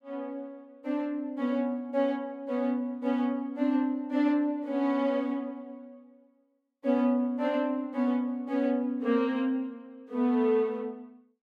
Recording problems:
none

